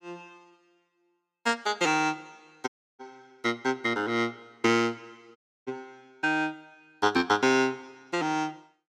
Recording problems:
dropout; at 2.5 s and at 5.5 s

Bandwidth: 16 kHz